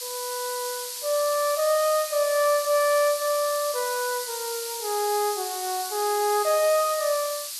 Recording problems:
hiss; SNR 6 dB

